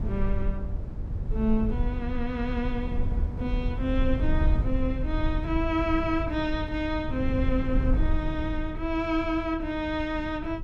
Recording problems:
rumble; below 76 Hz, SNR 2 dB

